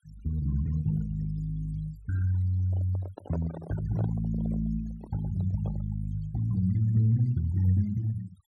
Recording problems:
denoising artefacts; signal-to-artefact ratio 21 dB
handling noise; from 2.5 to 6 s; peak -5 dB vs average level

